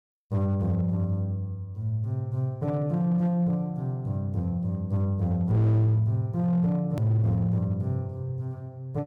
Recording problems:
distorted audio; hard clipping, signal-to-distortion ratio 11 dB
hard cut with a click; at 7 s

